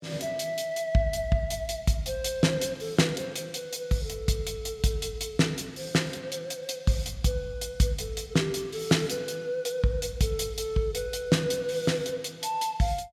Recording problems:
none

